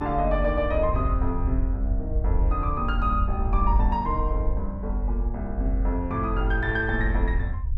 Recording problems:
rumble; below 60 Hz, strongest tone 46 Hz, SNR 0 dB

